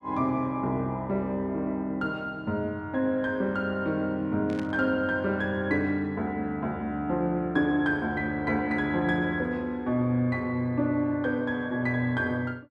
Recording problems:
burst of static; at 4.5 s; peak -11 dB vs average level

